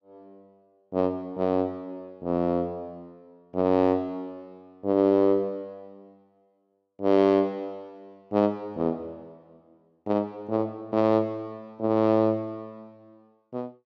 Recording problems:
none

